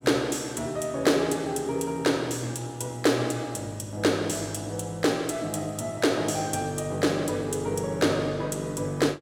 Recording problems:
none

